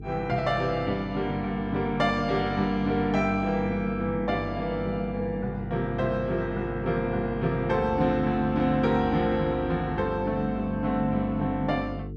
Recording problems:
mains hum; 50 Hz, harmonics up to 450 Hz, SNR 11 dB

